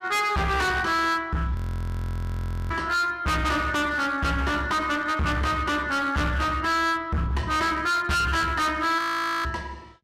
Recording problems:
distortion; hard clipping, signal-to-distortion ratio 6 dB
frozen audio; at 1.5 s for 1 s and at 9 s

